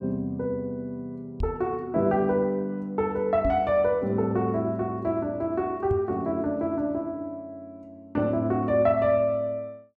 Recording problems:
microphone bump; at 1.5 s, at 3.5 s and at 6 s; peak 0 dB vs average level

